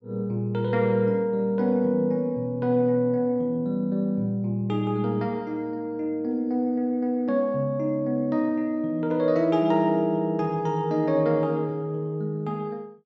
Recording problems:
treble cut off; nothing above 8 kHz

